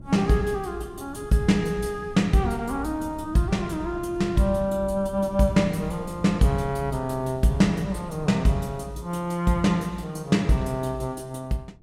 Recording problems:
wind noise; below 190 Hz, SNR 17 dB

